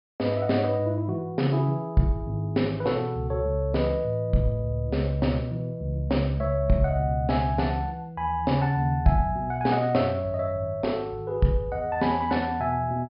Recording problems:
low-pass filter; nothing above 5.5 kHz

